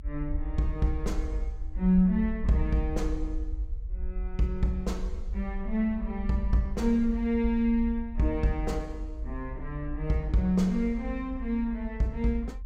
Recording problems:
low-frequency rumble; below 54 Hz, SNR 8 dB

